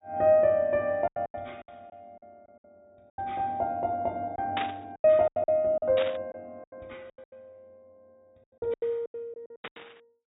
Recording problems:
low-pass filter; nothing above 4 kHz
lost packets; 16% of the sound replaced, filled with silence
static burst; at 4.5 s, at 6 s and at 9.5 s; peak -2 dB vs average level

